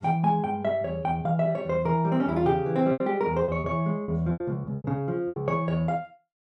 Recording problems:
packet loss; 7% of the sound replaced, filled with repeated pitch periods

